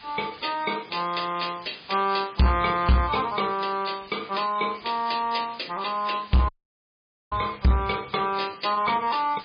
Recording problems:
lossy compression; MP3, log-spectral distance 12 dB, nothing above 4.5 kHz
distortion; soft clipping, signal-to-distortion ratio 7 dB
hiss; SNR 20 dB
dropout; at 6.5 s for 1 s

